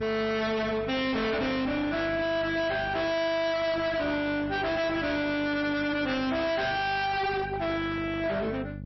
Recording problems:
codec artefacts; MP3, log-spectral distance 3 dB, nothing above 5.7 kHz
distortion; hard clipping, signal-to-distortion ratio 6 dB
hum; 50 Hz, harmonics up to 1.6 kHz, SNR 13 dB

